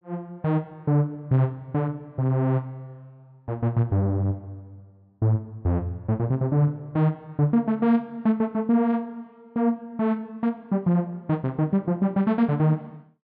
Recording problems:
treble cut off; nothing above 5.5 kHz

